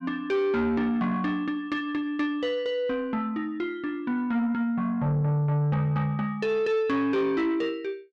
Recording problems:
distorted audio; soft clipping, signal-to-distortion ratio 11 dB

